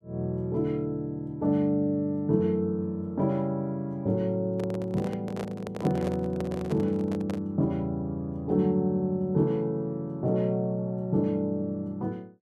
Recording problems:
handling noise; from 4.5 to 7.5 s; peak -4 dB vs average level

